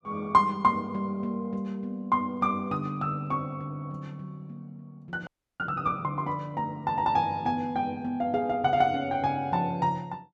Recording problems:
frozen audio; at 5.5 s

